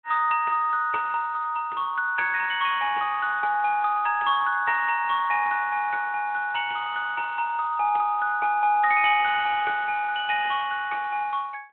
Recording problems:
telephone audio; 340 Hz to 3.5 kHz, Speex

